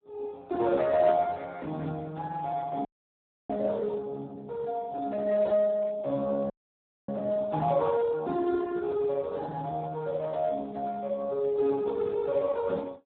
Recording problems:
phone line; 170 Hz to 2.1 kHz, Speex
audio freezing; at 3 s for 0.5 s and at 6.5 s for 0.5 s

